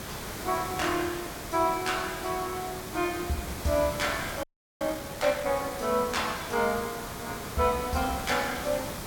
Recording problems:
hiss; slope -4 dB per octave, SNR 7 dB
frozen audio; at 4.5 s

